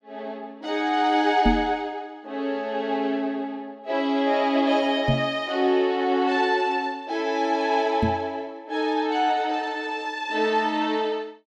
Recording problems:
knock on the microphone; at 1.5 s, at 5 s and at 8 s; peak +5 dB vs average level

